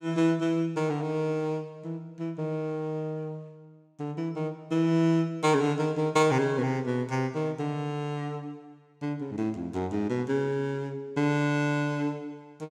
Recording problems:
none

